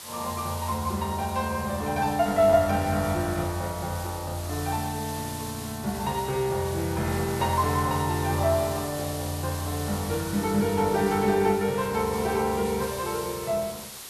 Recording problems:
background hiss; slope 0 dB per octave, SNR 12 dB

